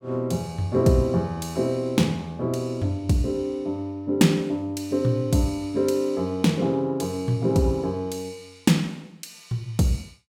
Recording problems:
none

